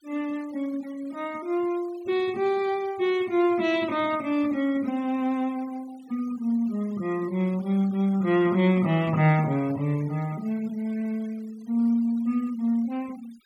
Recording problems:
denoising artefacts; signal-to-artefact ratio 24 dB

